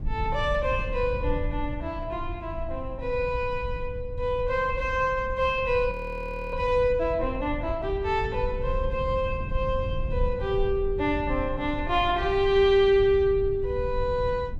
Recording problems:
low-frequency rumble; below 86 Hz, SNR 9 dB
audio freezing; at 6 s for 0.5 s

